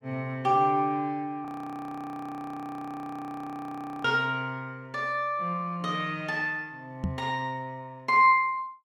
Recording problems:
frozen audio; at 1.5 s for 2.5 s
knock on the microphone; at 7 s; peak +2 dB vs average level

